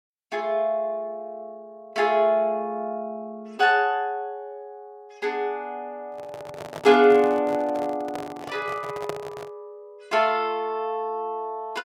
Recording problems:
handling noise; from 6 to 9.5 s; peak -4 dB vs average level

